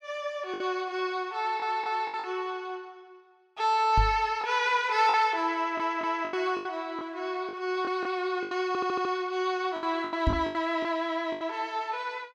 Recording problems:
lost packets; 9% of the sound replaced, filled with the last packet
stutter; at 1.5 s, at 5.5 s and at 8.5 s
microphone bump; at 4 s and at 10 s; peak +5 dB vs average level

